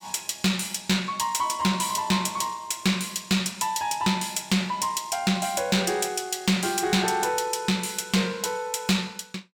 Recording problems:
distortion; soft clipping, signal-to-distortion ratio 11 dB

